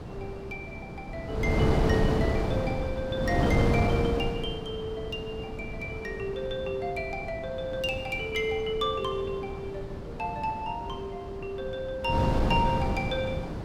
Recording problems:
wind noise; below 420 Hz, SNR 0 dB

